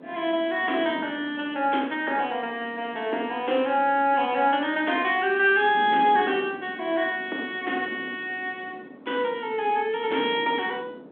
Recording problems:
telephone audio; 220 Hz to 3.5 kHz, G.726
wind on the microphone; below 450 Hz, SNR 17 dB

